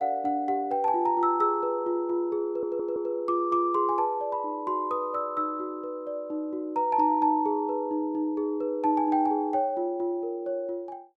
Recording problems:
audio stuttering; at 2.5 s

